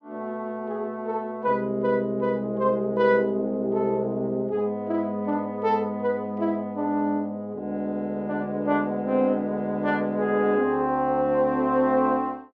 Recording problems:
none

